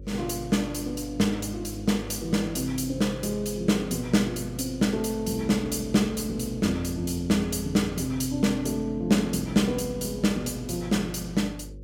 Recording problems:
hum; 50 Hz, harmonics up to 550 Hz, SNR 16 dB

